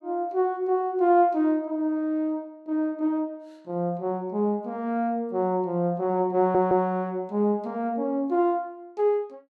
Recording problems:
stutter; at 6.5 s

